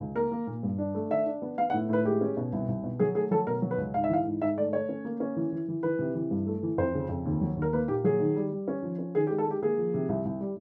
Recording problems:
none

